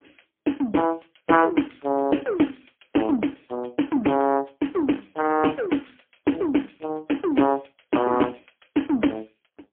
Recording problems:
telephone audio; 190 Hz to 3.3 kHz, AMR-NB, then MP3

